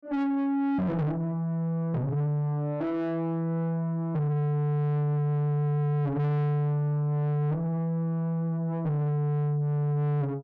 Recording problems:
distortion; soft clipping, signal-to-distortion ratio 7 dB

